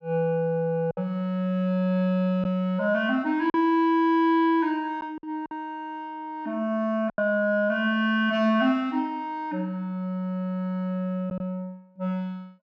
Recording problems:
lost packets; 3% of the sound replaced, filled with silence

